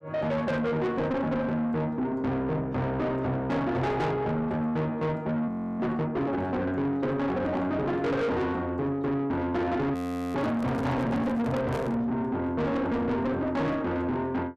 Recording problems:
distorted audio; soft clipping, signal-to-distortion ratio 8 dB
frozen audio; at 5.5 s and at 10 s
handling noise; from 10 to 12 s; peak -2 dB vs average level

